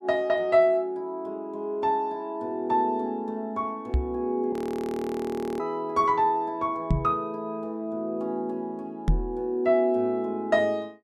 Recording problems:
knock on the microphone; at 4 s, at 7 s and at 9 s; peak +6 dB vs average level
audio freezing; at 4.5 s for 1 s

